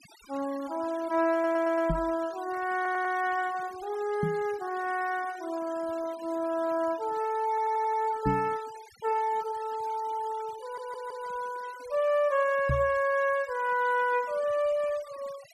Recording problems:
noise reduction artefacts; signal-to-artefact ratio 20 dB
audio stuttering; 4 times, first at 1.5 s
microphone thump; 4 times, first at 2 s; peak +4 dB vs average level

